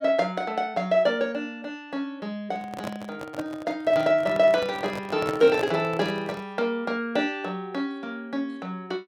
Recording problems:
microphone handling noise; from 2.5 to 6.5 s; peak -2 dB vs average level

